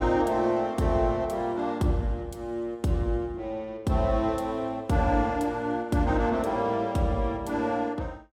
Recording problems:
none

